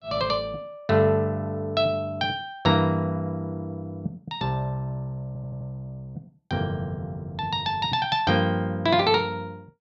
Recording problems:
stutter; at 5.5 s

